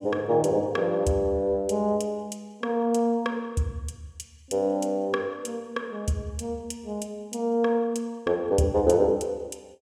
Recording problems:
none

